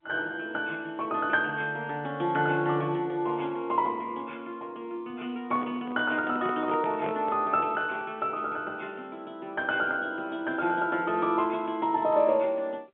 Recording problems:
telephone audio; 190 Hz to 3.5 kHz, G.711
microphone handling noise; from 5.5 to 8 s; peak -5 dB vs average level

